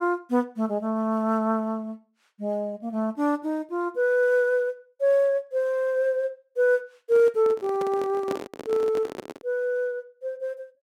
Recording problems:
microphone handling noise; from 7 to 9.5 s; peak -3 dB vs average level

